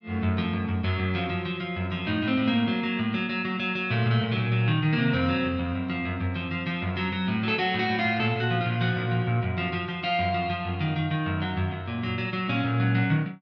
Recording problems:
none

